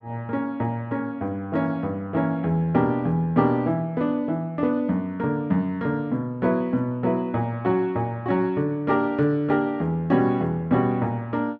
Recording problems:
none

